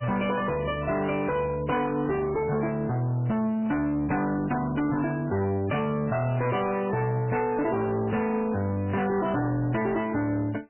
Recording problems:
lossy compression; MP3, log-spectral distance 3 dB, nothing above 2.4 kHz
distorted audio; hard clipping, uneven, signal-to-distortion ratio 9 dB

